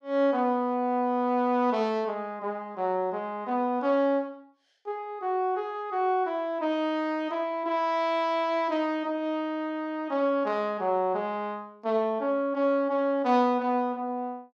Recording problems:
none

